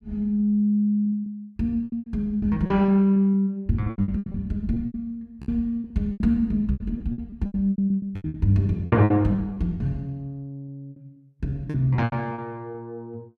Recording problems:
packet loss; 16% of the sound replaced, filled with repeated pitch periods

